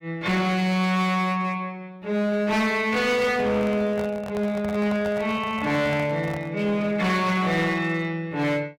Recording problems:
distorted audio; hard clipping, signal-to-distortion ratio 11 dB
microphone handling noise; from 3 to 6.5 s; peak -7 dB vs average level

